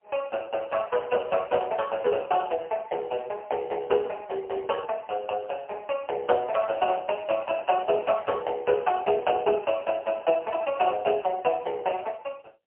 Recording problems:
phone line; 340 Hz to 3.2 kHz, AMR-NB, then MP3

